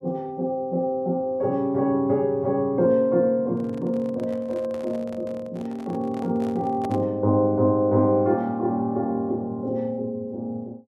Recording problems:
microphone handling noise; from 3.5 to 7 s; peak -8 dB vs average level

